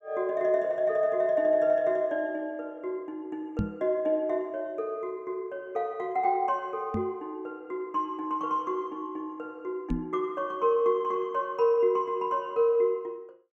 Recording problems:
microphone thump; at 3.5 s, at 7 s and at 10 s; peak +3 dB vs average level

